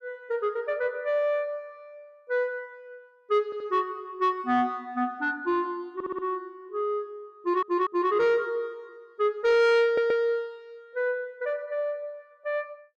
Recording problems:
distorted audio; soft clipping, signal-to-distortion ratio 12 dB
stutter; 4 times, first at 3.5 s

